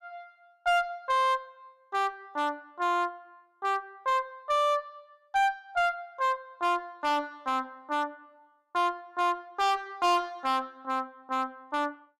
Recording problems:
distorted audio; hard clipping, signal-to-distortion ratio 7 dB

